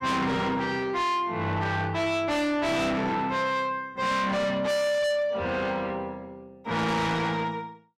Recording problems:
distortion; soft clipping, signal-to-distortion ratio 6 dB

